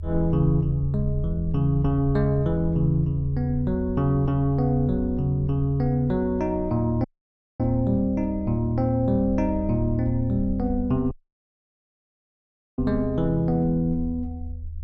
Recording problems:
rumble; below 80 Hz, SNR 10 dB
dropout; at 7 s for 0.5 s and at 11 s for 1.5 s

